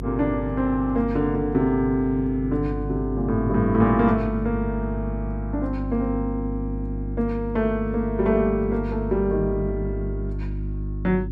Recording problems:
hum; 50 Hz, harmonics up to 350 Hz, SNR 7 dB

